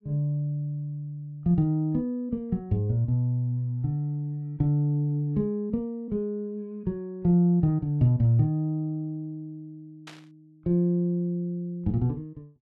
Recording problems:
burst of static; at 10 s; peak -13 dB vs average level

